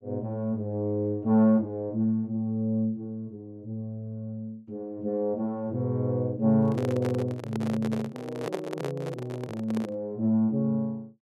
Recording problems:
microphone handling noise; from 6.5 to 10 s; peak 0 dB vs average level

